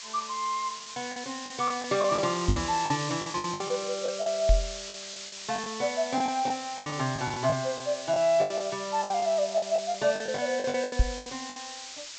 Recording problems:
low-pass filter; nothing above 8 kHz
background hiss; slope +4 dB per octave, SNR 9 dB
lost packets; 14% of the sound replaced, filled with the last packet
microphone bump; at 2.5 s, at 4.5 s and at 11 s; peak +8 dB vs average level

